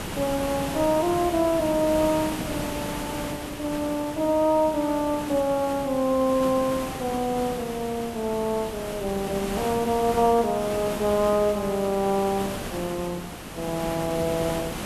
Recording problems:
background hiss; slope -5 dB per octave, SNR 8 dB

